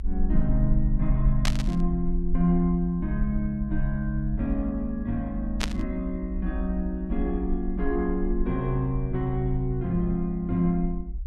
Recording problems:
low-frequency rumble; below 50 Hz, SNR 5 dB
burst of static; at 1.5 s and at 5.5 s; peak +4 dB vs average level

